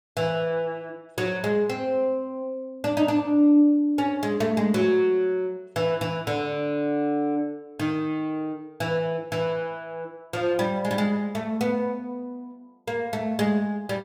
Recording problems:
none

